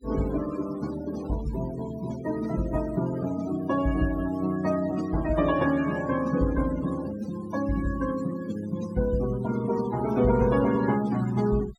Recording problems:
noise reduction artefacts; signal-to-artefact ratio 15 dB

